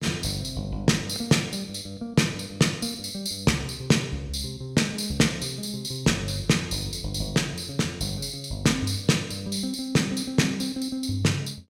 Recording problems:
none

